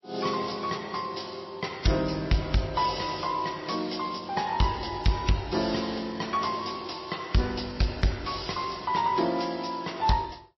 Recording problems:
lossy codec; MP3, then AAC, log-spectral distance 9 dB, nothing above 5.7 kHz
distortion; soft clipping, signal-to-distortion ratio 11 dB

